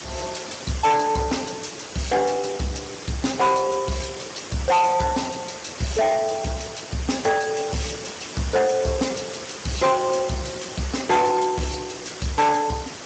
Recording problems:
codec artefacts; Speex, log-spectral distance 15 dB, nothing above 7.6 kHz
distortion; soft clipping, signal-to-distortion ratio 7 dB
hiss; slope -3 dB per octave, SNR 11 dB

